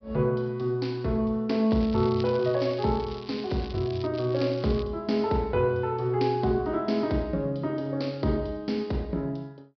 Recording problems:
treble cut off; nothing above 5.5 kHz
crackling; from 1.5 to 4 s and at 4 s; loose cable, SNR 18 dB

